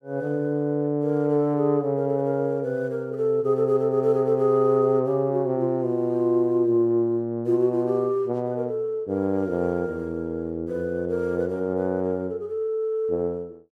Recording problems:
none

